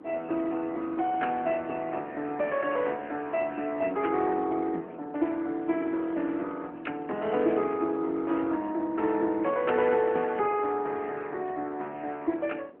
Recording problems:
phone line; 220 Hz to 3.1 kHz, AMR-NB
wind on the microphone; below 520 Hz, SNR 20 dB

